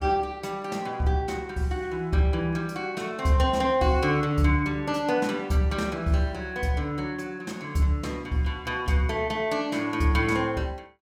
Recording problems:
none

